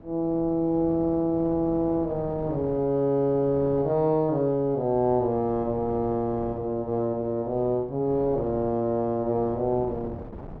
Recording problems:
wind noise; below 470 Hz, SNR 17 dB

